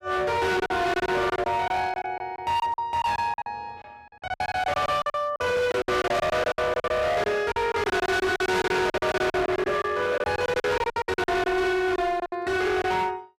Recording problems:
distortion; hard clipping, signal-to-distortion ratio 6 dB
packet loss; 17% of the sound replaced, filled with silence

